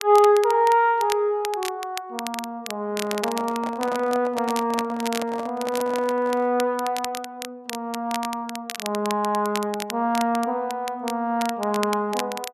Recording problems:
crackling; vinyl, SNR 12 dB
handling noise; from 3 to 6.5 s; peak -6 dB vs average level

